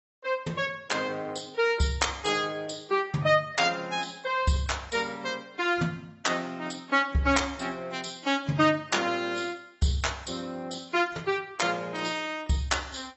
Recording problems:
lossy codec; AAC, log-spectral distance 6 dB, nothing above 7.8 kHz

